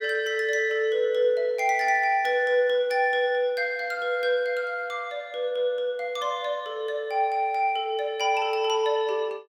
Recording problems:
none

